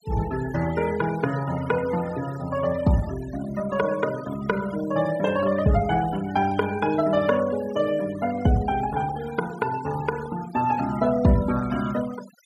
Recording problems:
denoising artefacts; signal-to-artefact ratio 16 dB

